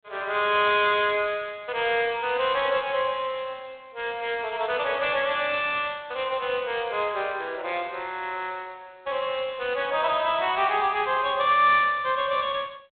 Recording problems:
telephone audio; 340 Hz to 3.7 kHz, G.726

